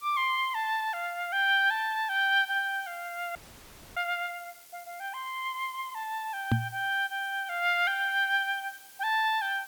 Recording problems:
hiss; slope 0 dB per octave, SNR 21 dB
audio freezing; at 3.5 s for 0.5 s
knock on the microphone; at 6.5 s; peak +6 dB vs average level

